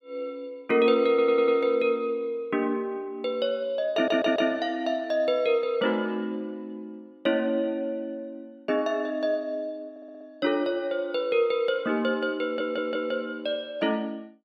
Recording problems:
audio stuttering; 4 times, first at 1 s

